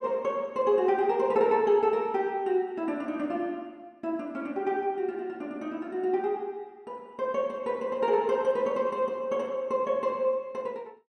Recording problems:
none

